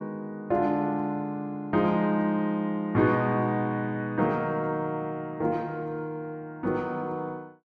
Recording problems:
none

